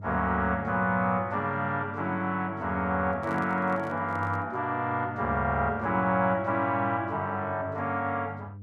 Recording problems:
hum; 50 Hz, harmonics up to 500 Hz, SNR 15 dB
microphone handling noise; from 3 to 4.5 s; peak -11 dB vs average level

